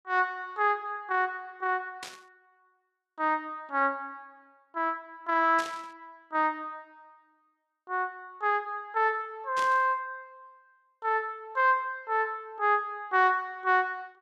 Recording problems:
static burst; at 2 s, at 5.5 s and at 9.5 s; peak -6 dB vs average level

